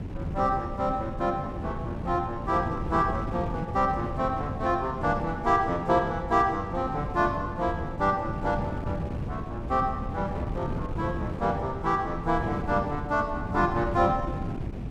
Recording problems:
wind noise; below 240 Hz, SNR 7 dB

